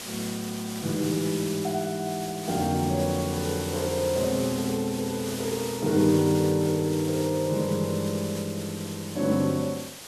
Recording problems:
hiss; slope -1 dB per octave, SNR 10 dB

